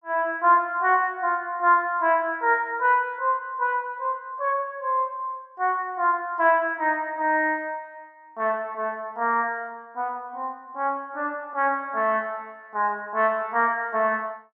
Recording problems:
none

